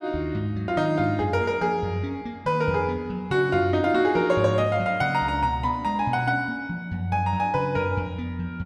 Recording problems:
none

